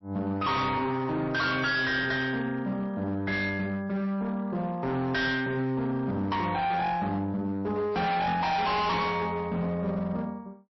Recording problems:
lossy codec; MP3, log-spectral distance 2 dB, nothing above 5.7 kHz
distorted audio; hard clipping, signal-to-distortion ratio 6 dB

